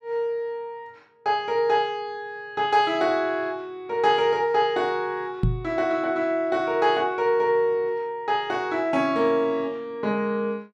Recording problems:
microphone thump; at 5.5 s; peak +5 dB vs average level

